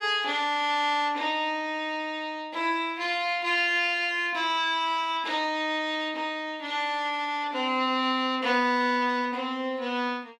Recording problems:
none

